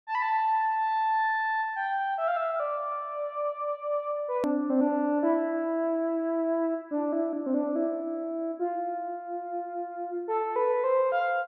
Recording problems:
hard cut with a click; at 4.5 s

